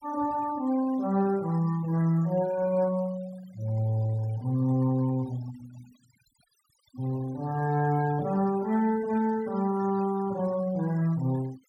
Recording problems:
noise reduction artefacts; signal-to-artefact ratio 21 dB

